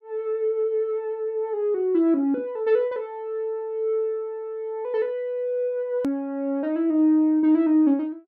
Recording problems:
hard cut with a click; at 6 s

